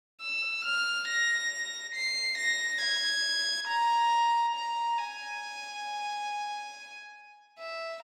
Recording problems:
none

